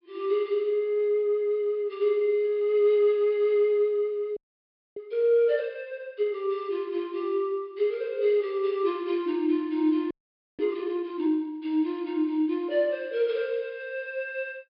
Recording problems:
treble missing; nothing above 5.5 kHz
audio freezing; at 4.5 s for 0.5 s and at 10 s

